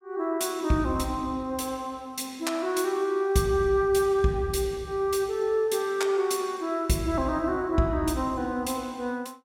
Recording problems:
none

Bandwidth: 16.5 kHz